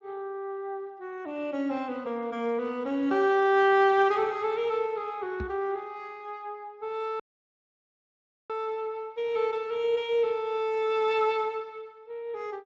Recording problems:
lossy codec; MP3, then Speex, log-spectral distance 2 dB
microphone bump; at 5.5 s; peak -6 dB vs average level
audio cutting out; at 7 s for 1.5 s

